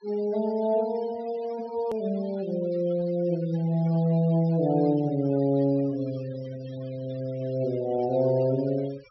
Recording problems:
treble missing; nothing above 5.7 kHz
noise reduction artefacts; signal-to-artefact ratio 22 dB
hard cut with a click; at 2 s

